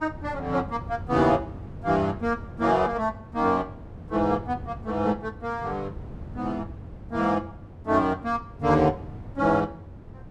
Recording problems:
wind noise; below 210 Hz, SNR 14 dB

